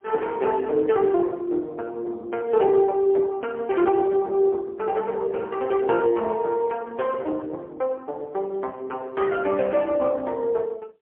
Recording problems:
phone line; 300 Hz to 3.5 kHz, AMR-NB, then MP3

